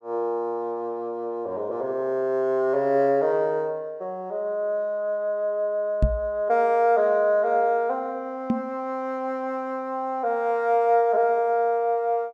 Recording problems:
microphone thump; at 6 s and at 8.5 s; peak +6 dB vs average level

